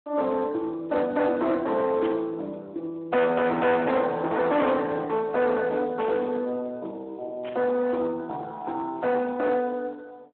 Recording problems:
phone line; 280 Hz to 2.5 kHz, Speex
distorted audio; hard clipping, uneven, signal-to-distortion ratio 8 dB
static burst; 4 times, first at 2 s; peak -9 dB vs average level

